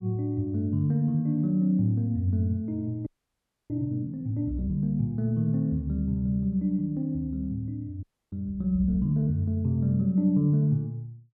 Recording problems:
frozen audio; at 3 s for 0.5 s and at 8 s

